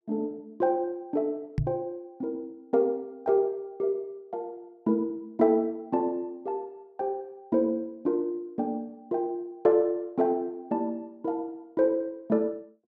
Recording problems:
microphone thump; at 1.5 s; peak +4 dB vs average level

